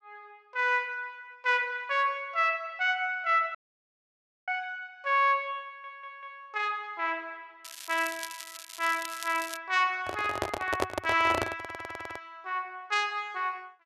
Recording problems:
audio cutting out; at 3.5 s for 1 s
audio stuttering; at 5.5 s and at 12 s
crackle; from 7.5 to 9.5 s; loose cable, SNR 12 dB
handling noise; from 10 to 12 s; peak +5 dB vs average level

